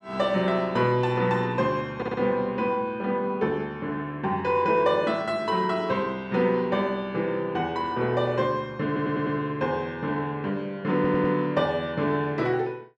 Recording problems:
stutter; at 2 s, at 9 s and at 11 s

